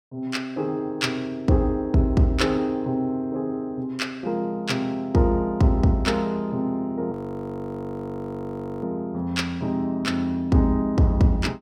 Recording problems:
frozen audio; at 7 s for 1.5 s

